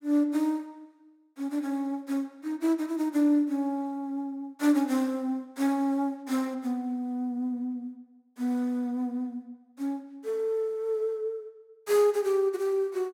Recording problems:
none

